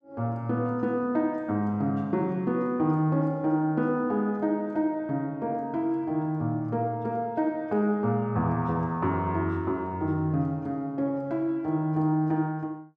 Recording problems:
none

